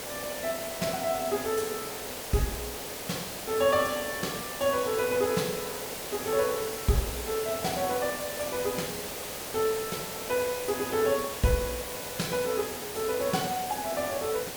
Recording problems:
hiss; SNR 5 dB

